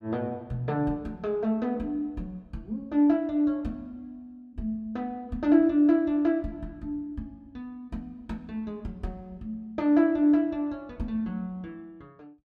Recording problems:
none

